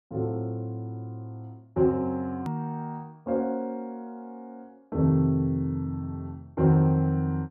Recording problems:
treble missing; nothing above 5.5 kHz
hard cut with a click; at 2.5 s

